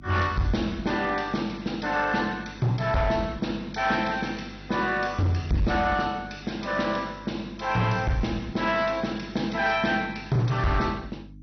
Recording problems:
codec artefacts; MP2, log-spectral distance 4 dB, nothing above 6 kHz
distortion; hard clipping, signal-to-distortion ratio 12 dB
hum; 50 Hz, harmonics up to 300 Hz, SNR 19 dB

